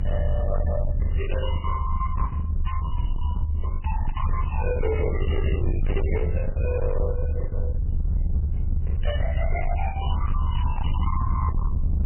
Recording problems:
codec artefacts; MP3, log-spectral distance 2 dB, nothing above 3 kHz
distortion; hard clipping, signal-to-distortion ratio 8 dB
low-frequency rumble; below 76 Hz, SNR -5 dB
packet loss; 8% of the sound replaced, filled with the last packet

